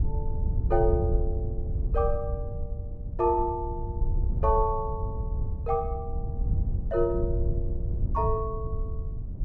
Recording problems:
wind noise; below 90 Hz, SNR 1 dB

